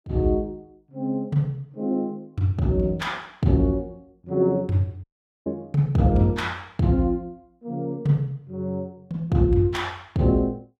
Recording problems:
audio cutting out; at 5 s

